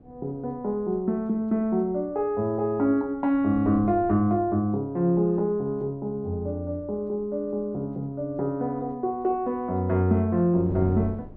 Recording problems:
wind noise; below 330 Hz, SNR 20 dB

